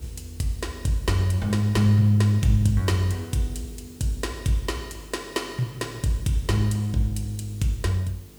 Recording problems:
mains hum; 50 Hz, harmonics up to 450 Hz, SNR 25 dB
background hiss; slope -2 dB per octave, SNR 26 dB

